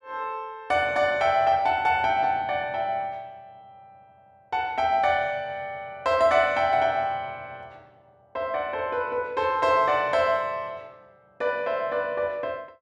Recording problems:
none

